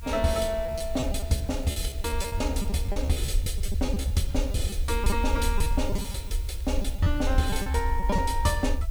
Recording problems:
background hiss; slope +1 dB per octave, SNR 21 dB
rumble; below 70 Hz, SNR 2 dB
lost packets; 13% of the sound replaced, filled with repeated pitch periods
crackling; from 1.5 to 3 s and from 5 to 7 s; loose cable, SNR 27 dB

